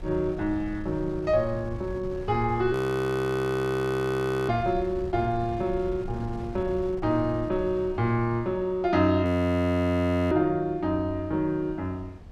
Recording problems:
wind on the microphone; below 170 Hz, SNR 15 dB
frozen audio; at 2.5 s for 2 s and at 9.5 s for 1 s

